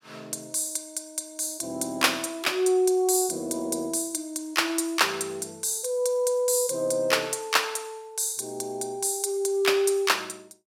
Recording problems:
none

